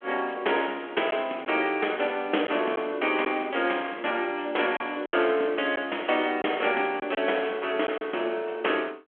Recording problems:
phone line; 240 Hz to 3.4 kHz, G.726
lost packets; 3% of the sound replaced, filled with silence

